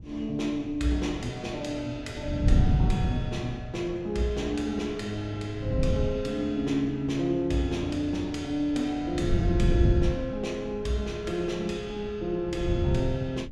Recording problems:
wind noise; below 140 Hz, SNR -1 dB

